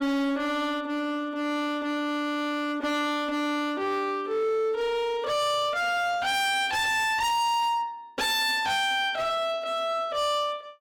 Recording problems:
distorted audio; hard clipping, signal-to-distortion ratio 6 dB

